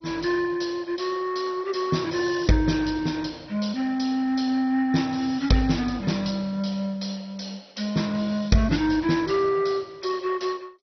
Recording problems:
codec artefacts; MP2, log-spectral distance 5 dB, nothing above 5.8 kHz

